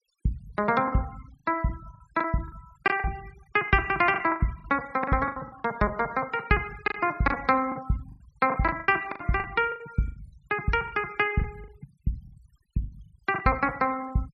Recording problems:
denoising artefacts; signal-to-artefact ratio 23 dB
packet loss; 13% of the sound replaced, filled with the last packet

